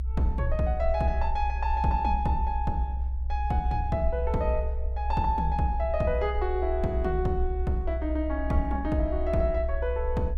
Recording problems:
low-frequency rumble; below 64 Hz, strongest tone 64 Hz, SNR 2 dB

